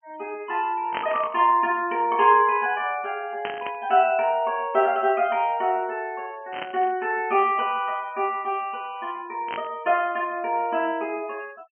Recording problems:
treble missing; nothing above 3.1 kHz
noise reduction artefacts; signal-to-artefact ratio 26 dB
burst of static; 4 times, first at 1 s; peak -2 dB vs average level

